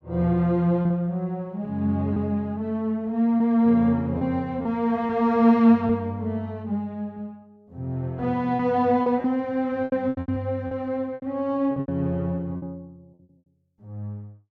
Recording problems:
packet loss; 6% of the sound replaced, filled with repeated pitch periods

